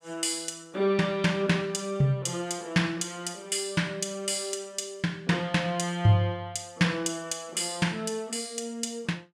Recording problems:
none

